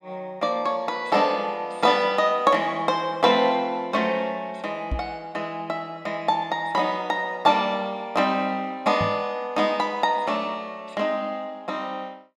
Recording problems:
microphone thump; at 5 s and at 9 s; peak 0 dB vs average level

